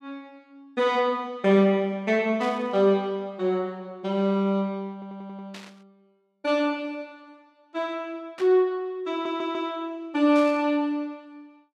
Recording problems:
static burst; 4 times, first at 2.5 s; peak -11 dB vs average level
stutter; at 5 s and at 9 s

